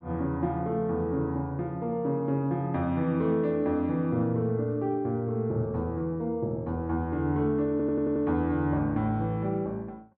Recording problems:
audio stuttering; at 7.5 s

